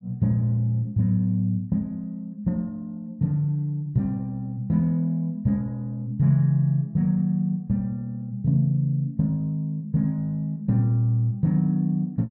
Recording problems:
none

